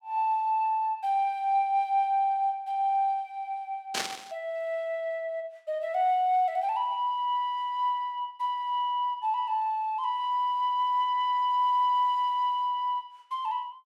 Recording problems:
static burst; at 4 s; peak +2 dB vs average level

